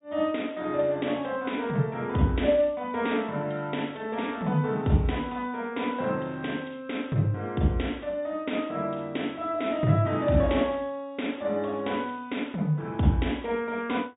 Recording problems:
treble missing; nothing above 4 kHz

